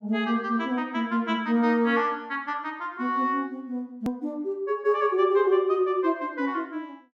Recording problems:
hard cut with a click; at 4 s

